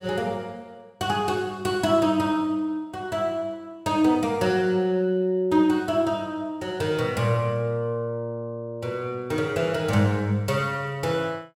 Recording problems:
none

